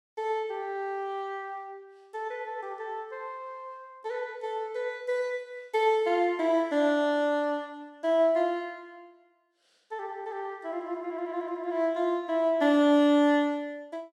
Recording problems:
none

